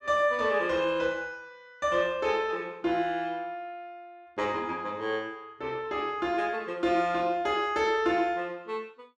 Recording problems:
none

